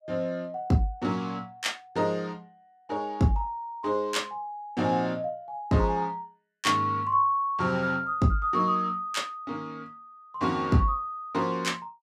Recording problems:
none

